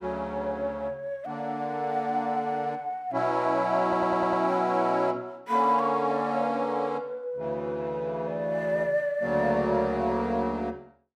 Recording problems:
audio stuttering; at 4 s

